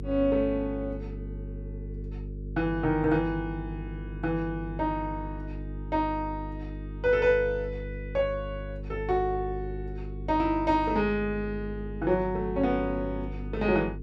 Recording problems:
hum; 50 Hz, harmonics up to 450 Hz, SNR 9 dB

